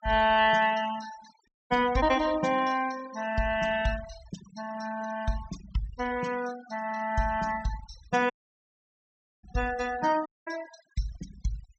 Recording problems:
low-pass filter; nothing above 7.8 kHz
noise reduction artefacts; signal-to-artefact ratio 16 dB
audio cutting out; at 1.5 s, at 8.5 s for 1 s and at 10 s

